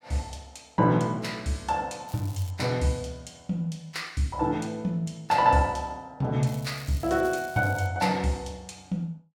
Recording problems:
crackling; at 2 s and from 6.5 to 8 s; loose cable, SNR 20 dB

